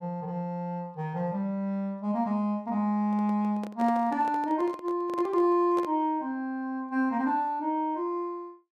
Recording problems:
microphone handling noise; from 3 to 6 s; peak -6 dB vs average level

